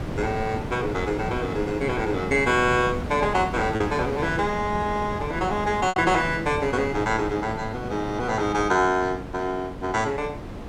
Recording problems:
wind noise; below 490 Hz, SNR 9 dB
lost packets; 1.2% of the sound replaced, filled with repeated pitch periods

